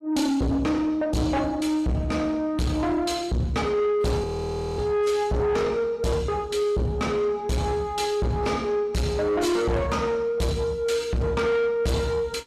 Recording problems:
lossy compression; AAC, log-spectral distance 2 dB, nothing above 13.5 kHz
distorted audio; soft clipping, signal-to-distortion ratio 8 dB
frozen audio; at 4 s for 0.5 s

